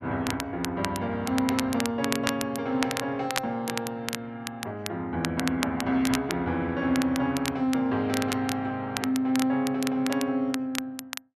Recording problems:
crackle; vinyl, SNR 8 dB

